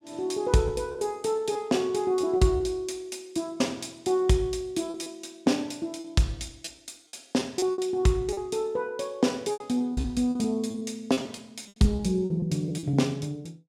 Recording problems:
packet loss; 8% of the sound replaced, filled with repeated pitch periods

